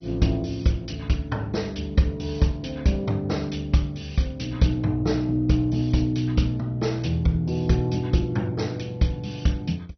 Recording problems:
lossy compression; MP2, log-spectral distance 3 dB, nothing above 6 kHz

